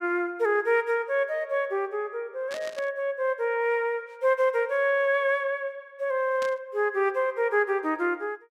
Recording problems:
burst of static; at 2.5 s and at 6.5 s; peak -9 dB vs average level

